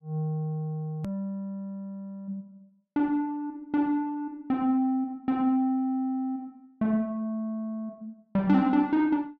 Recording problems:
edit click; at 1 s

